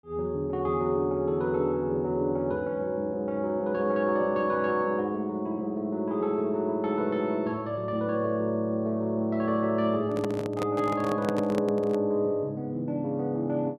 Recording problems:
handling noise; from 10 to 12 s; peak 0 dB vs average level

